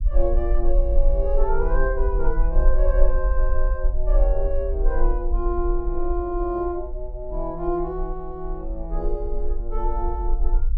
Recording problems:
rumble; below 40 Hz, strongest tone 18 Hz, SNR -2 dB

